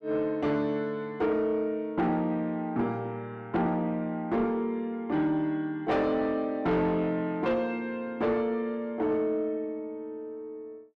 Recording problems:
distorted audio; soft clipping, signal-to-distortion ratio 12 dB

